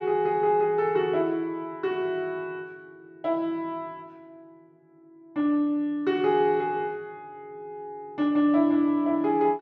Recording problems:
none

